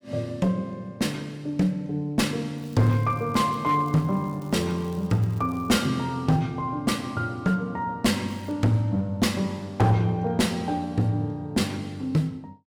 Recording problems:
distortion; hard clipping, uneven, signal-to-distortion ratio 11 dB
crackle; from 2.5 to 6 s and at 8.5 s; loose cable, SNR 29 dB

